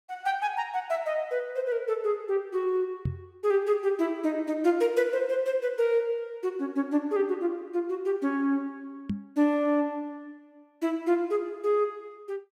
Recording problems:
knock on the microphone; at 3 s and at 9 s; peak +1 dB vs average level

